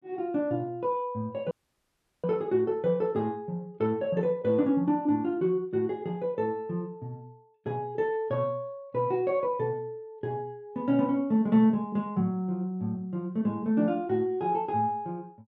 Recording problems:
dropout; at 1.5 s for 0.5 s

